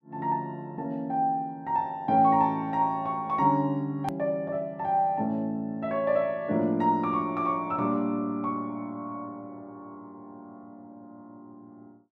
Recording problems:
click at an edit; at 4 s

